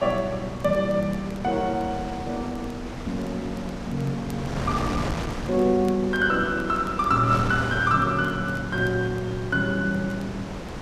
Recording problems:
wind on the microphone; below 950 Hz, SNR 9 dB
crackling; vinyl, SNR 30 dB

